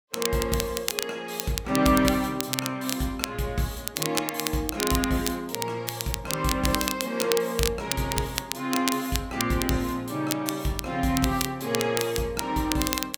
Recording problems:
crackle; vinyl, SNR 4 dB

